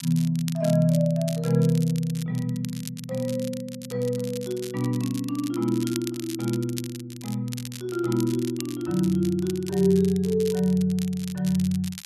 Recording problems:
crackling; vinyl, SNR 15 dB

